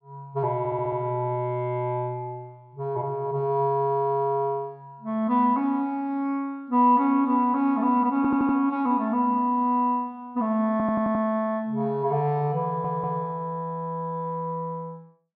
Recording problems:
treble cut off; nothing above 5.3 kHz
stutter; 4 times, first at 0.5 s

